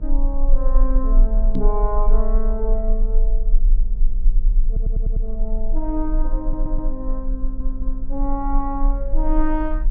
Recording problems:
electrical hum; 50 Hz, harmonics up to 700 Hz, SNR 13 dB
rumble; below 34 Hz, strongest tone 22 Hz, SNR -5 dB
knock on the microphone; at 1.5 s; peak +8 dB vs average level
stutter; at 4.5 s, at 6.5 s and at 7.5 s

